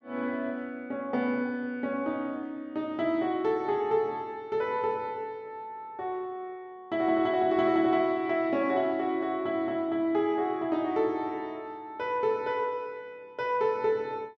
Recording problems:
none

